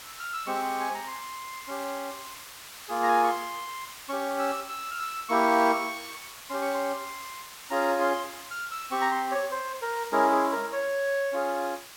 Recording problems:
background hiss; SNR 14 dB

